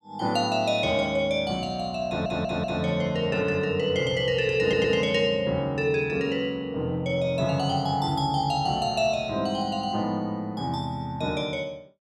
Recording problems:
stutter; at 2 s and at 4.5 s

